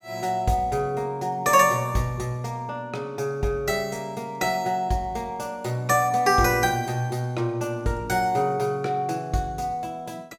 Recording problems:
none

